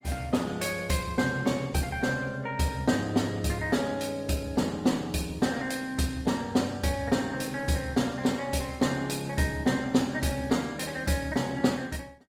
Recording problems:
lossy compression; Opus, log-spectral distance 4 dB

